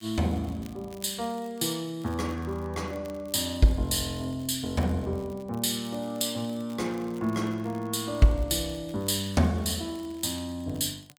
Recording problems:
crackling; vinyl, SNR 26 dB

